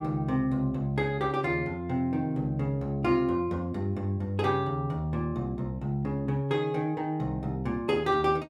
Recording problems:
none

